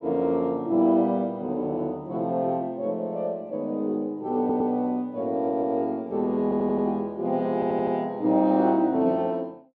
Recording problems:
stutter; 4 times, first at 4.5 s

